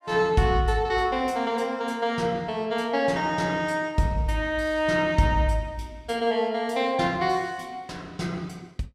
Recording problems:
none

